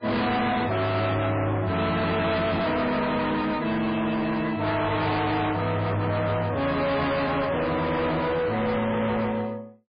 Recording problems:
lossy compression; MP3, log-spectral distance 3 dB, nothing above 4.6 kHz
distorted audio; hard clipping, uneven, signal-to-distortion ratio 6 dB

